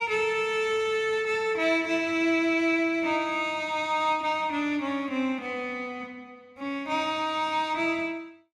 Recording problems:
none

